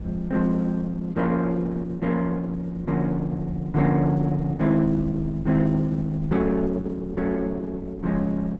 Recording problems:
lossy codec; Opus, log-spectral distance 2 dB, nothing above 7.6 kHz
wind on the microphone; below 110 Hz, SNR 16 dB

